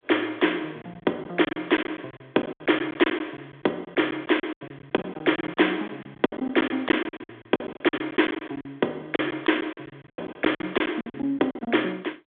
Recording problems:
phone line; 240 Hz to 3.5 kHz, G.726
packet loss; 16% of the sound replaced, filled with silence

